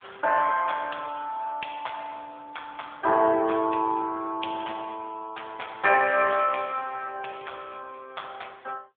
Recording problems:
telephone audio; 280 Hz to 3.4 kHz, AMR-NB

